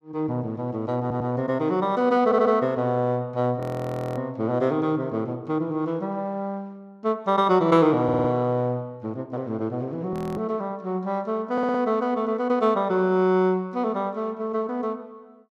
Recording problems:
stutter; 4 times, first at 1 s
frozen audio; at 3.5 s for 0.5 s and at 10 s

